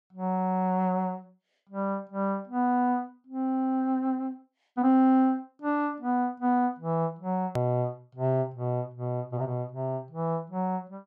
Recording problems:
hard cut with a click; at 7.5 s

